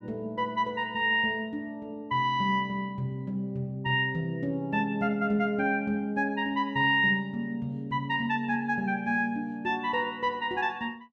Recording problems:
none

